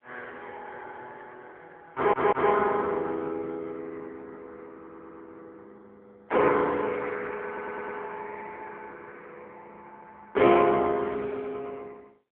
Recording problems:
phone line; 280 Hz to 3.5 kHz, AMR-NB
stutter; at 2 s, at 5 s and at 7.5 s

